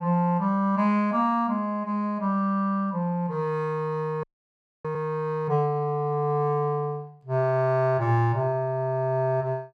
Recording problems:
audio freezing; at 4 s for 0.5 s

